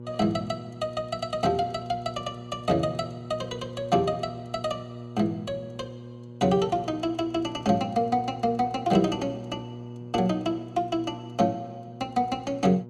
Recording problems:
hum; 60 Hz, harmonics up to 960 Hz, SNR 13 dB

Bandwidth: 14.5 kHz